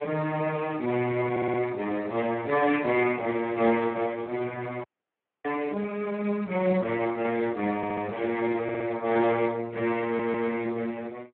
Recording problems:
telephone audio; 170 Hz to 3.2 kHz, Speex
audio stuttering; 4 times, first at 1.5 s
audio cutting out; at 5 s for 0.5 s

